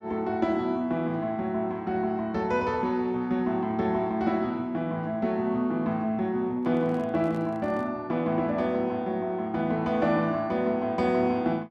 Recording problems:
microphone handling noise; from 6.5 to 8 s; peak -11 dB vs average level

